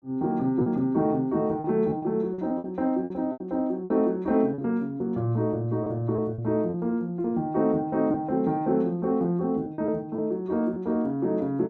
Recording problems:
packet loss; 8% of the sound replaced, filled with repeated pitch periods

